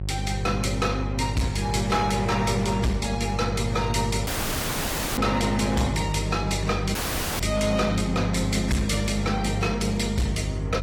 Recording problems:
lossy compression; AAC, log-spectral distance 4 dB
distortion; hard clipping, uneven, signal-to-distortion ratio 10 dB
mains hum; 50 Hz, harmonics up to 550 Hz, SNR 5 dB
audio cutting out; at 4.5 s for 1 s and at 7 s

